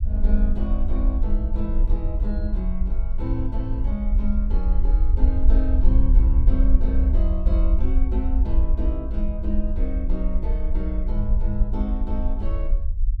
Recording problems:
low-frequency rumble; below 52 Hz, SNR -7 dB

